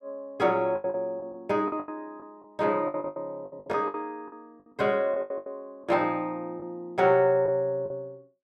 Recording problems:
lost packets; 13% of the sound replaced, filled with the last packet

